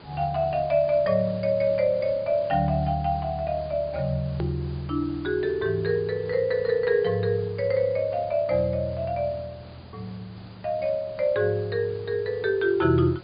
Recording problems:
low-pass filter; nothing above 4.9 kHz
hiss; SNR 21 dB
edit click; at 4.5 s

